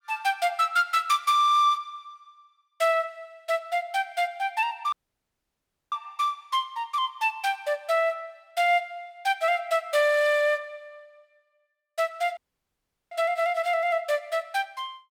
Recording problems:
dropout; at 5 s for 1 s and at 12 s for 0.5 s

